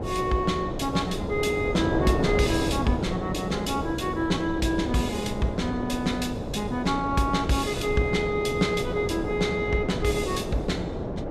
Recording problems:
wind noise; below 530 Hz, SNR 4 dB

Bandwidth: 14.5 kHz